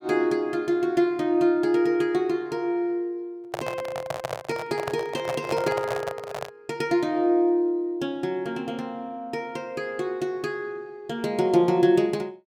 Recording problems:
microphone handling noise; from 3.5 to 6.5 s; peak -1 dB vs average level

